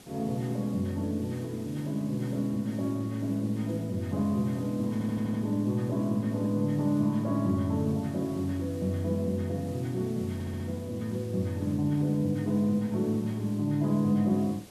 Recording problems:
hiss; SNR 22 dB
stutter; at 5 s and at 10 s

